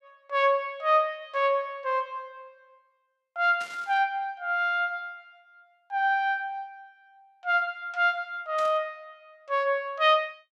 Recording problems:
static burst; at 3.5 s and at 8.5 s; peak -12 dB vs average level

